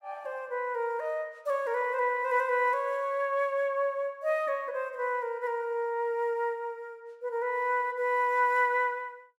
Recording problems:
none

